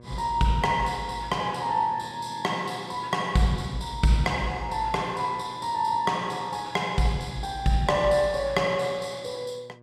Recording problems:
hum; 60 Hz, harmonics up to 1.2 kHz, SNR 23 dB

